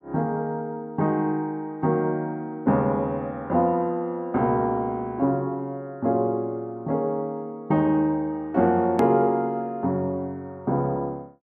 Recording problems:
edit click; at 9 s

